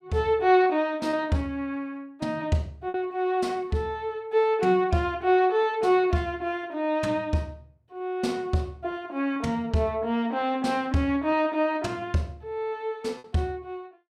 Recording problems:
packet loss; 1.9% of the sound replaced, filled with repeated pitch periods

